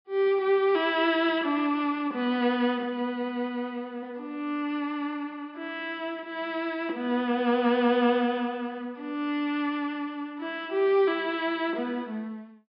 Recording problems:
low-pass filter; nothing above 5.5 kHz

